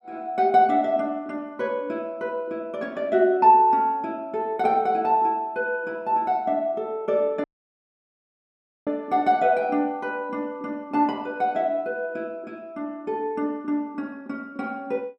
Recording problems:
dropout; at 7.5 s for 1.5 s

